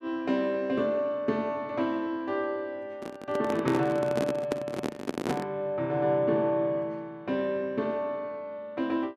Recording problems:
handling noise; from 3 to 5.5 s; peak +4 dB vs average level

